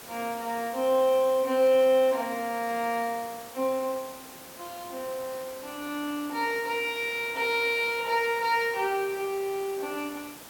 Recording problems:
background hiss; slope -3 dB per octave, SNR 16 dB

